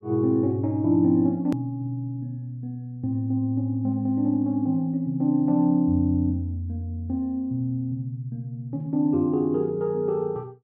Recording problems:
edit click; at 1.5 s

